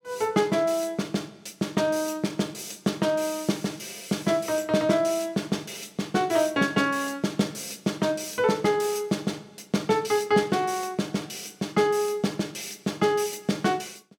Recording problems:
none

